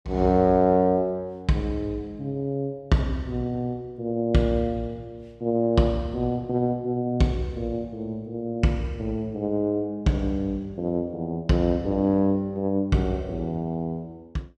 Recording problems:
none

